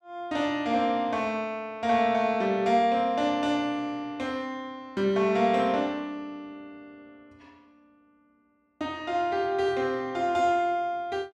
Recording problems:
none

